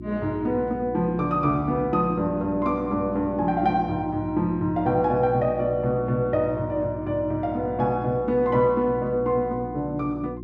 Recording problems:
hum; 60 Hz, harmonics up to 360 Hz, SNR 12 dB

